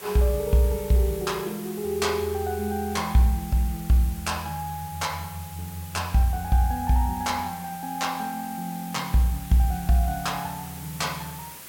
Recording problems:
hiss; slope -1 dB per octave, SNR 15 dB

